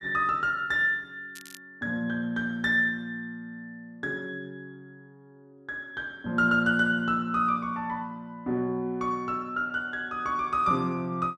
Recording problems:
crackling; at 1.5 s; loose cable, SNR 20 dB

